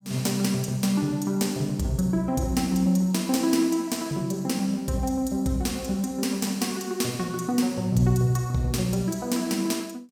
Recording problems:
none

